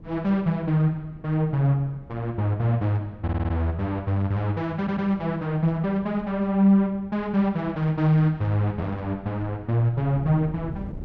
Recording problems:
wind noise; below 200 Hz, SNR 20 dB
stutter; at 3 s and at 5 s

